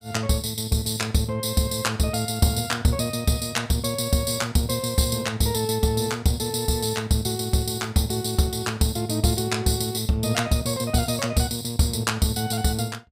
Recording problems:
none

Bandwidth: 15.5 kHz